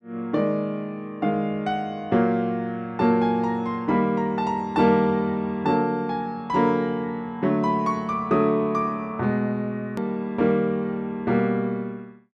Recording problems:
edit click; at 10 s

